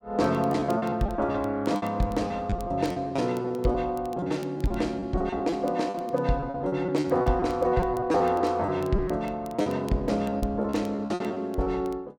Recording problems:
crackling; vinyl, SNR 27 dB
lost packets; 15% of the sound replaced, filled with repeated pitch periods

